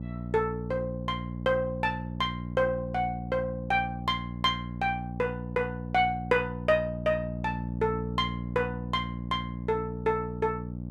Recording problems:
electrical hum; 60 Hz, harmonics up to 600 Hz, SNR 6 dB

